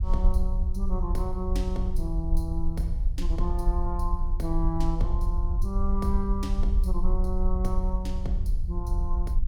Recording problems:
rumble; below 56 Hz, strongest tone 24 Hz, SNR -4 dB

